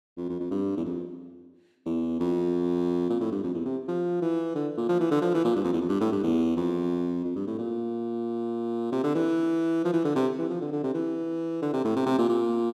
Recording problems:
none

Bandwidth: 14 kHz